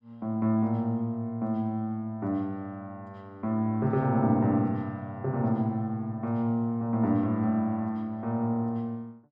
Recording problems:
none

